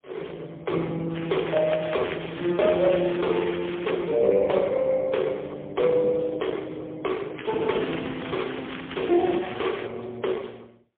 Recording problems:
telephone audio; 170 Hz to 3.4 kHz, AMR-NB, then MP3
crackling; from 1 to 4 s and from 7.5 to 10 s; loose cable, SNR 12 dB

